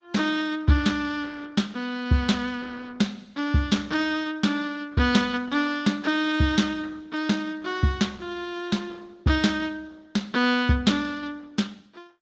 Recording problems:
low-pass filter; nothing above 8 kHz
codec artefacts; Opus, log-spectral distance 3 dB

